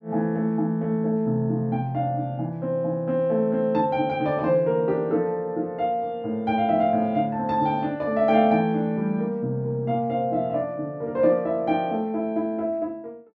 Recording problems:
none

